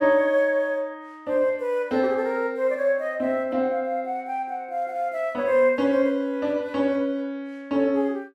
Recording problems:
none

